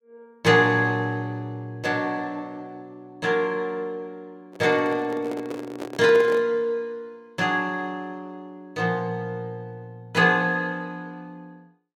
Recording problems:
microphone handling noise; from 4.5 to 6.5 s; peak -5 dB vs average level

